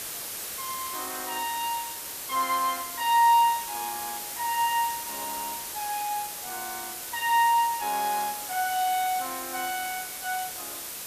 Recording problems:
background hiss; slope 0 dB per octave, SNR 6 dB

